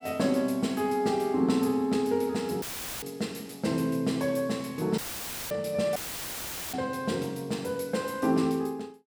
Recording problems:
dropout; at 2.5 s, at 5 s for 0.5 s and at 6 s for 1 s; filled with static

